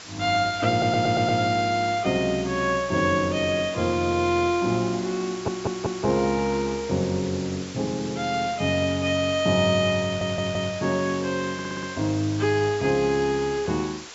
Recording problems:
treble cut off; nothing above 8 kHz
background hiss; slope 0 dB per octave, SNR 15 dB
stutter; 4 times, first at 0.5 s

